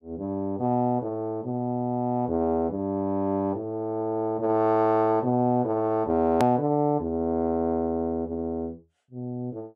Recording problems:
edit click; at 6.5 s

